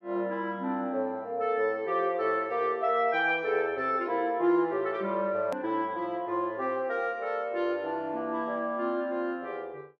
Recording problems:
hard cut with a click; at 5.5 s

